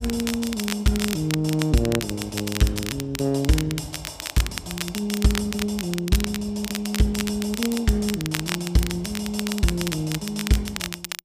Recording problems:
crackle; vinyl, SNR 7 dB

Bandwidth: 15 kHz